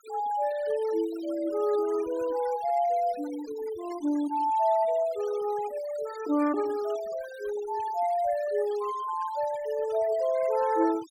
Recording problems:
noise reduction artefacts; signal-to-artefact ratio 19 dB

